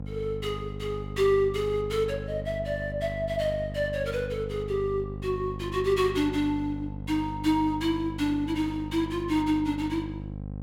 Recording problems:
hum; 50 Hz, harmonics up to 800 Hz, SNR 9 dB

